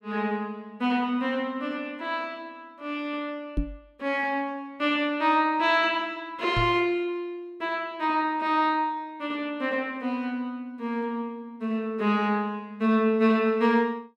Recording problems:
microphone thump; at 3.5 s and at 6.5 s; peak +3 dB vs average level

